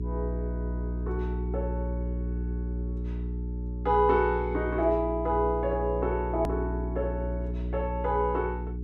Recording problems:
hum; 60 Hz, harmonics up to 420 Hz, SNR 4 dB
click at an edit; at 6.5 s

